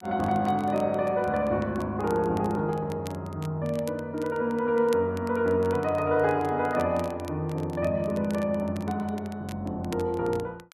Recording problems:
crackling; vinyl, SNR 23 dB

